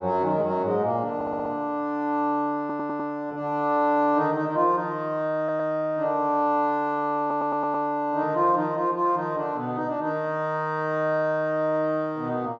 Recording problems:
stutter; 4 times, first at 1 s

